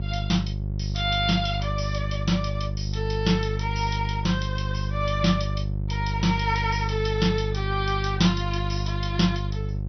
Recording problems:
lossy codec; MP2, log-spectral distance 5 dB, nothing above 6 kHz
hum; 50 Hz, harmonics up to 400 Hz, SNR 2 dB

